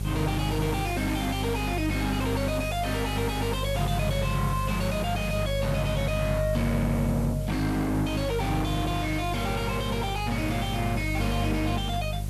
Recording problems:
distorted audio; soft clipping, signal-to-distortion ratio 6 dB
hum; 50 Hz, harmonics up to 400 Hz, SNR 3 dB
hiss; slope -2 dB per octave, SNR 15 dB

